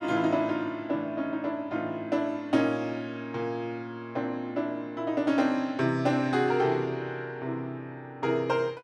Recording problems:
none

